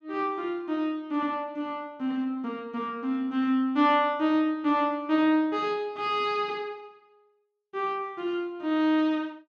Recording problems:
none

